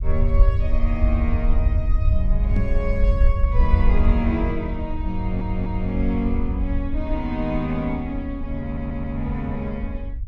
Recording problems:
rumble; below 66 Hz, SNR -3 dB
knock on the microphone; at 2.5 s; peak +5 dB vs average level
audio stuttering; at 5 s and at 8.5 s

